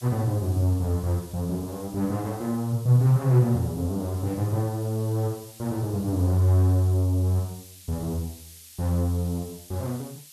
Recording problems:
hiss; SNR 20 dB

